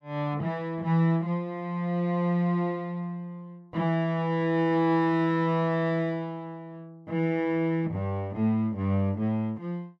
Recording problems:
none

